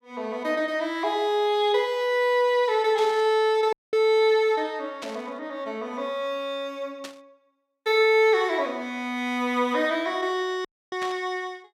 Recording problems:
burst of static; 4 times, first at 3 s; peak -9 dB vs average level
audio cutting out; at 3.5 s and at 11 s

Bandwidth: 16 kHz